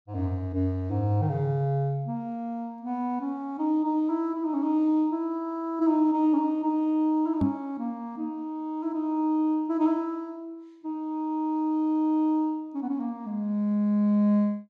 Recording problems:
microphone thump; at 7.5 s; peak +3 dB vs average level

